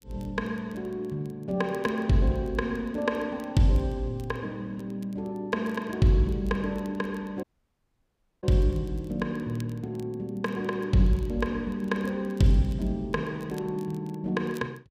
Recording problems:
crackle; vinyl, SNR 29 dB
audio cutting out; at 7.5 s for 1 s

